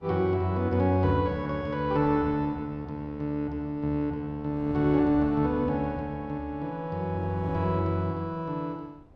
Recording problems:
wind noise; below 400 Hz, SNR 20 dB

